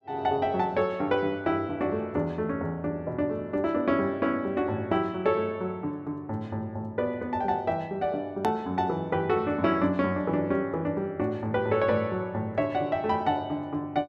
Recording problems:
click at an edit; at 8.5 s

